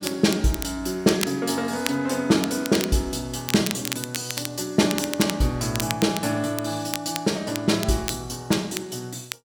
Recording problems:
crackle; vinyl, SNR 8 dB

